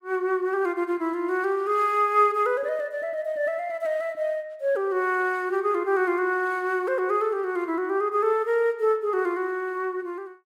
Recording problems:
none

